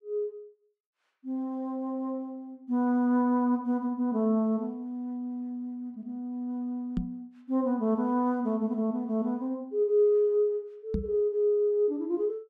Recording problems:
knock on the microphone; at 7 s and at 11 s; peak +2 dB vs average level

